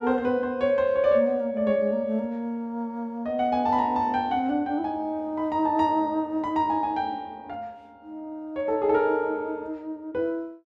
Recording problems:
none

